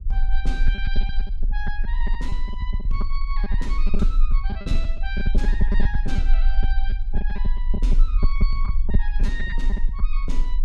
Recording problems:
rumble; below 38 Hz, strongest tone 24 Hz, SNR -11 dB
packet loss; 10% of the sound replaced, filled with repeated pitch periods

